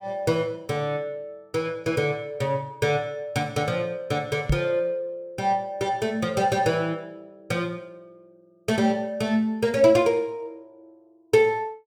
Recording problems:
microphone bump; at 4.5 s; peak +4 dB vs average level

